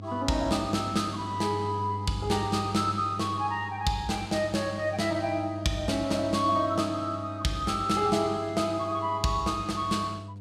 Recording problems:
electrical hum; 50 Hz, harmonics up to 700 Hz, SNR 11 dB

